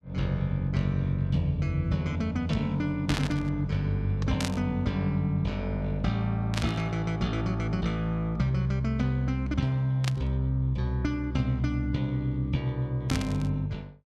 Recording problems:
burst of static; 5 times, first at 3 s; peak 0 dB vs average level

